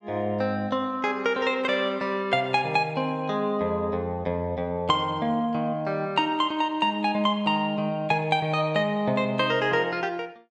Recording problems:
none

